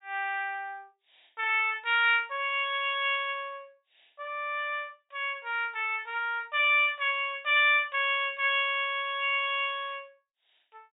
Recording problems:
low-pass filter; nothing above 4 kHz

